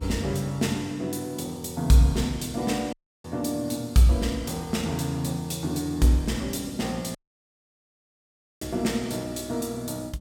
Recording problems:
hum; 50 Hz, harmonics up to 600 Hz, SNR 25 dB
audio cutting out; at 3 s and at 7 s for 1.5 s

